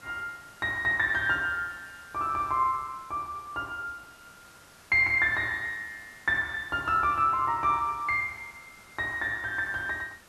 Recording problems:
background hiss; SNR 25 dB

